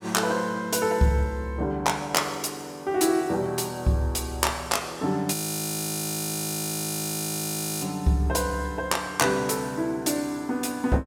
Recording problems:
frozen audio; at 5.5 s for 2.5 s

